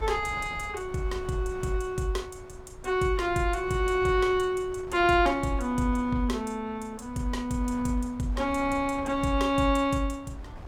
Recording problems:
wind noise; below 310 Hz, SNR 17 dB

